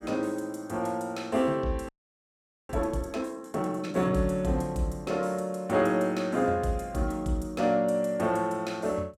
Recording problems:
frozen audio; at 2 s for 1 s

